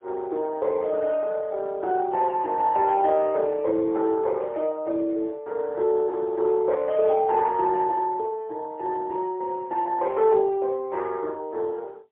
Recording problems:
phone line; 280 Hz to 3.1 kHz, AMR-NB, then MP3

